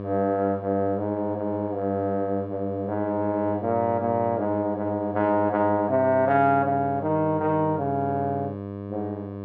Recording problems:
hum; 50 Hz, harmonics up to 1.2 kHz, SNR 10 dB

